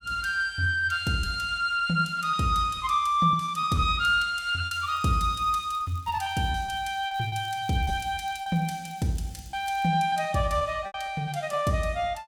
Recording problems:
packet loss; 7% of the sound replaced, filled with repeated pitch periods
crackling; from 4.5 to 10 s; loose cable, SNR 28 dB

